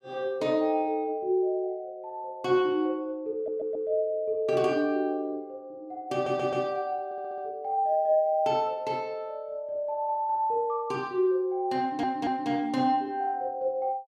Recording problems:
stutter; 4 times, first at 3.5 s

